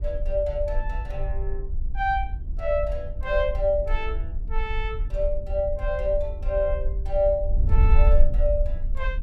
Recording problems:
wind noise; below 52 Hz, SNR 0 dB

